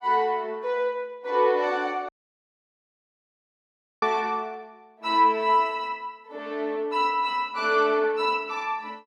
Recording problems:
dropout; at 2 s for 2 s

